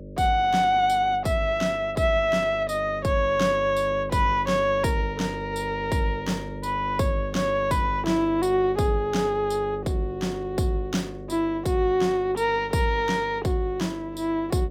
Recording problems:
hum; 50 Hz, harmonics up to 600 Hz, SNR 13 dB

